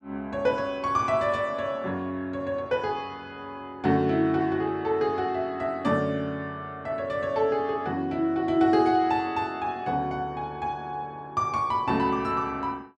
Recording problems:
none

